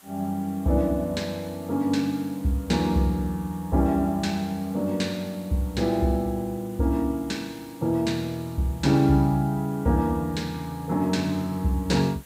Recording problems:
hiss; slope -1 dB per octave, SNR 24 dB

